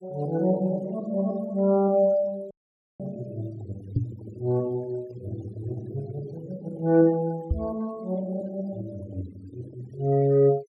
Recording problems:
denoising artefacts; signal-to-artefact ratio 26 dB
audio cutting out; at 2.5 s
microphone thump; at 4 s and at 7.5 s; peak +6 dB vs average level

